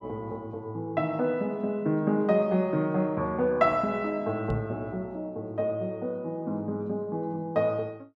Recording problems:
microphone thump; at 4.5 s; peak +2 dB vs average level

